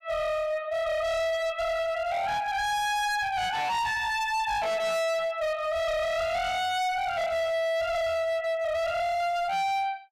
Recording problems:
distorted audio; hard clipping, signal-to-distortion ratio 6 dB

